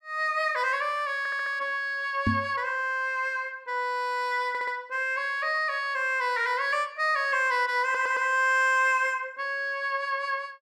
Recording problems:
audio stuttering; at 1 s, at 4.5 s and at 8 s
microphone bump; at 2.5 s; peak +3 dB vs average level

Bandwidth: 14.5 kHz